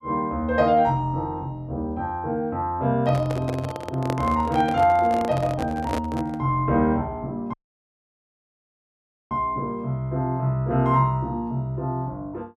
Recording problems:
microphone handling noise; from 3 to 6.5 s; peak 0 dB vs average level
dropout; at 7.5 s for 2 s

